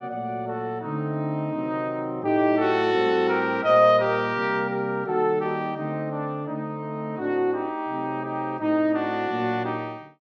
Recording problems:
none

